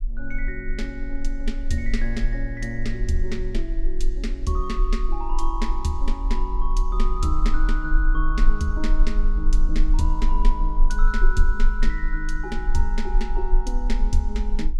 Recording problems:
low-frequency rumble; below 34 Hz, strongest tone 22 Hz, SNR -3 dB

